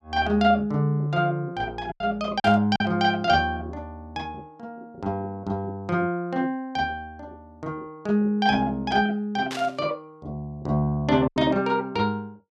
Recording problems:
lost packets; 2% of the sound replaced, filled with silence
burst of static; at 2.5 s and at 9.5 s; peak -5 dB vs average level

